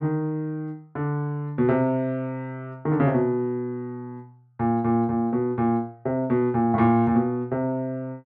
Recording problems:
none

